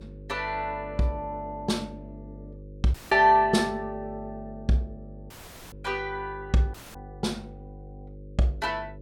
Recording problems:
electrical hum; 50 Hz, harmonics up to 550 Hz, SNR 17 dB
dropout; at 3 s, at 5.5 s and at 6.5 s

